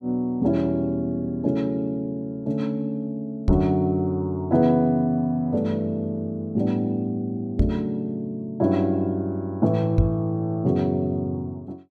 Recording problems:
microphone bump; at 3.5 s, at 7.5 s and at 10 s; peak +6 dB vs average level

